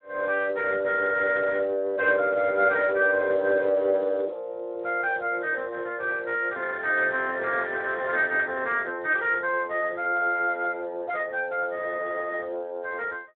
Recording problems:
phone line; 300 Hz to 3.1 kHz, Speex

